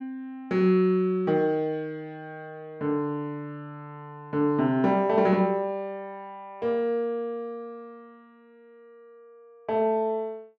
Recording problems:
none

